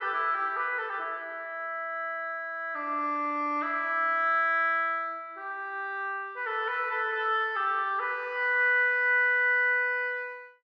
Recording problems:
none

